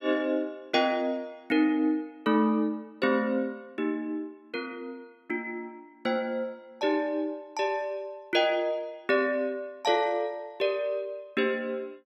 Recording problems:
none

